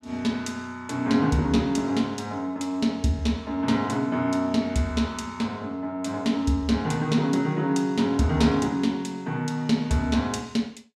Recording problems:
none

